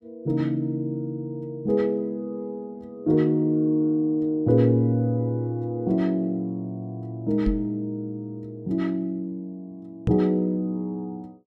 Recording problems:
knock on the microphone; at 7.5 s and at 10 s; peak +4 dB vs average level

